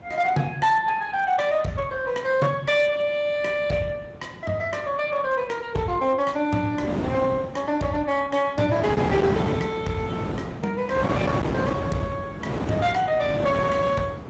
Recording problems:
lossy codec; Speex, log-spectral distance 3 dB
distortion; hard clipping, uneven, signal-to-distortion ratio 11 dB
wind on the microphone; below 670 Hz, SNR 4 dB

